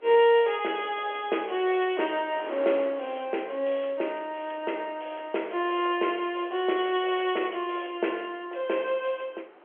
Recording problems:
phone line; 280 Hz to 3.2 kHz, G.711
wind noise; below 1.2 kHz, SNR 21 dB

